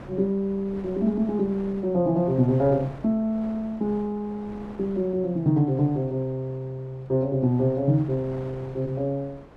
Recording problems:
wind noise; below 710 Hz, SNR 19 dB

